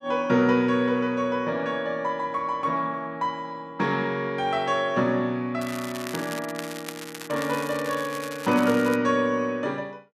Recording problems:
crackle; from 5.5 to 9 s; loose cable, SNR 13 dB

